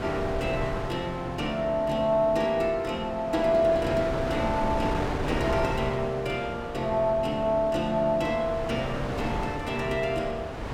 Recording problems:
wind on the microphone; below 910 Hz, SNR 7 dB

